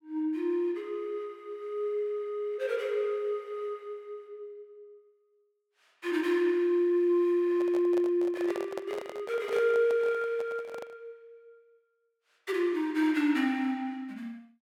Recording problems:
handling noise; from 7.5 to 11 s; peak -5 dB vs average level

